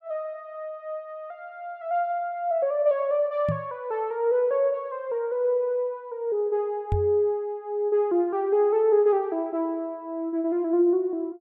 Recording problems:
microphone thump; at 3.5 s and at 7 s; peak +2 dB vs average level

